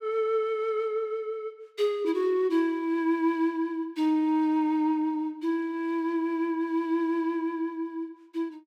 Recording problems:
none

